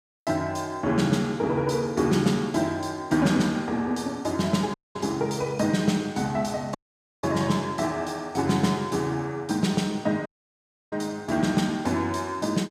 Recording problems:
audio cutting out; at 4.5 s, at 7 s and at 10 s for 0.5 s

